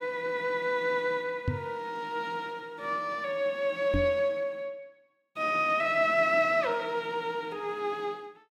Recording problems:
knock on the microphone; at 1.5 s and at 4 s; peak +3 dB vs average level

